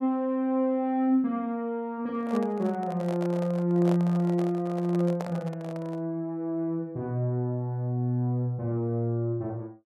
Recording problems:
microphone handling noise; from 2 to 6 s; peak -3 dB vs average level

